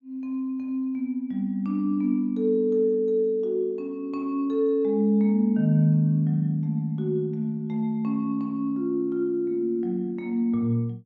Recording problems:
none

